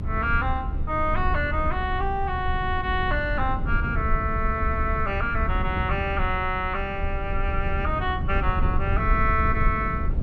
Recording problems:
low-frequency rumble; below 90 Hz, SNR 2 dB

